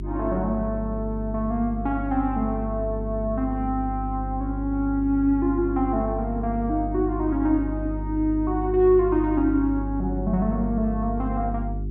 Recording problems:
hum; 50 Hz, harmonics up to 400 Hz, SNR 7 dB

